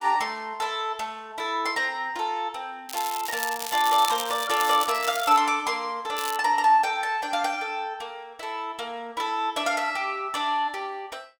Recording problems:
crackling; from 3 to 5.5 s and at 6 s; loose cable, SNR 8 dB

